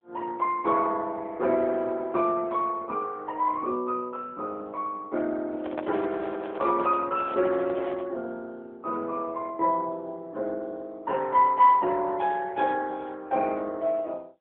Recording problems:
phone line; 260 Hz to 3.4 kHz, AMR-NB
handling noise; from 5.5 to 8 s; peak -7 dB vs average level

